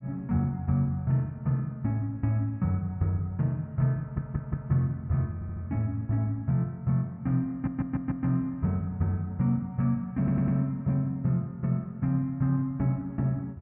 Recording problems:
stutter; 4 times, first at 4 s

